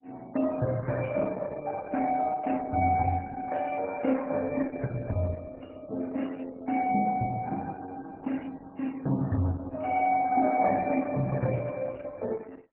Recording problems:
lossy compression; MP3, then Opus, log-spectral distance 4 dB, nothing above 2.4 kHz

